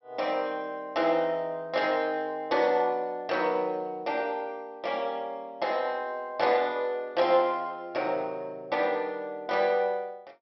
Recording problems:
low-pass filter; nothing above 5.7 kHz

